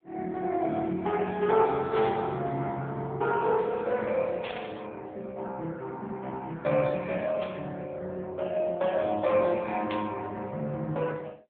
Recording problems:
phone line; 110 Hz to 3.6 kHz, AMR-NB
static burst; 4 times, first at 2 s; peak -5 dB vs average level

